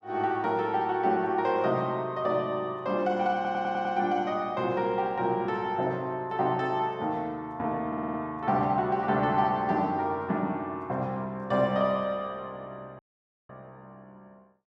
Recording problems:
stutter; at 3.5 s and at 8 s
audio cutting out; at 13 s for 0.5 s

